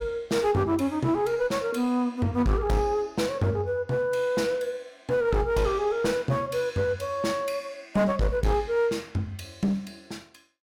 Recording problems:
distorted audio; hard clipping, uneven, signal-to-distortion ratio 10 dB

